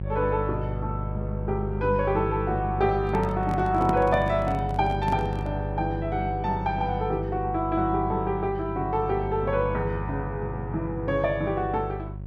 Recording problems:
hum; 50 Hz, harmonics up to 550 Hz, SNR 6 dB
handling noise; from 3 to 5.5 s; peak +2 dB vs average level

